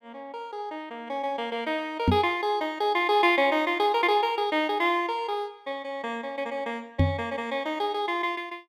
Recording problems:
microphone bump; at 2 s and at 7 s; peak +7 dB vs average level

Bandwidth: 15 kHz